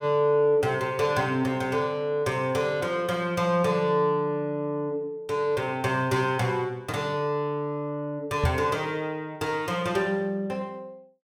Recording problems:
microphone bump; at 8.5 s; peak +4 dB vs average level

